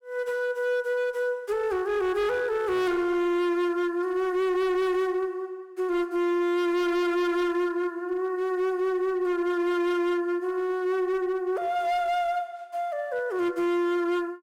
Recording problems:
distortion; hard clipping, uneven, signal-to-distortion ratio 12 dB

